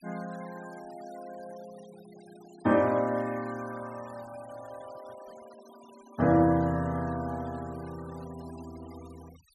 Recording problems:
denoising artefacts; signal-to-artefact ratio 24 dB

